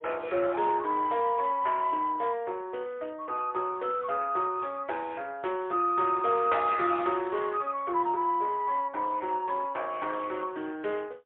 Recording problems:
telephone audio; 320 Hz to 3.4 kHz, AMR-NB, then MP3

